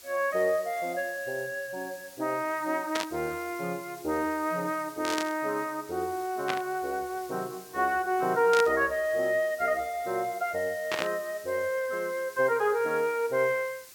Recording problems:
hiss; slope +1 dB per octave, SNR 19 dB
burst of static; 5 times, first at 3 s; peak +2 dB vs average level

